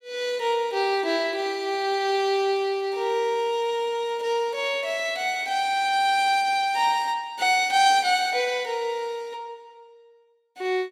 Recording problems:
none

